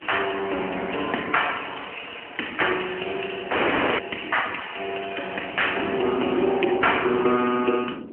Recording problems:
telephone audio; 220 Hz to 3.1 kHz, AMR-NB
wind on the microphone; below 380 Hz, SNR 16 dB
crackle; from 1 to 3 s and at 7 s; loose cable, SNR 20 dB
audio cutting out; at 3.5 s

